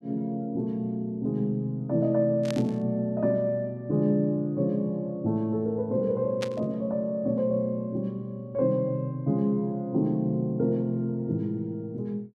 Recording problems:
burst of static; at 2.5 s and at 6.5 s; peak -3 dB vs average level

